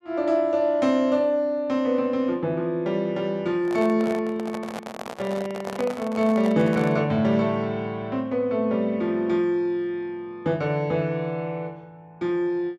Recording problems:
microphone handling noise; from 3.5 to 7 s; peak -4 dB vs average level

